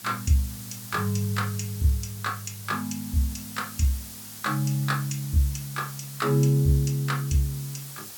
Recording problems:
hiss; SNR 12 dB

